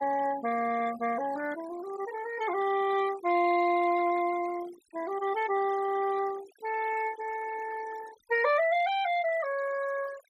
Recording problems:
noise reduction artefacts; signal-to-artefact ratio 16 dB

